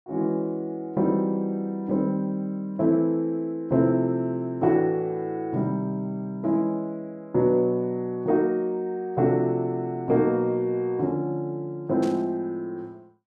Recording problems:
static burst; at 12 s; peak -12 dB vs average level

